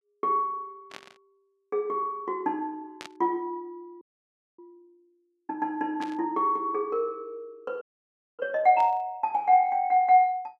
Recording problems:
static burst; 4 times, first at 1 s; peak -10 dB vs average level
audio freezing; at 4 s for 0.5 s and at 8 s for 0.5 s

